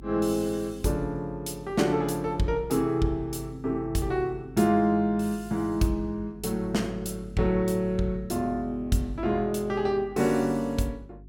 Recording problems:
hum; 50 Hz, harmonics up to 400 Hz, SNR 19 dB

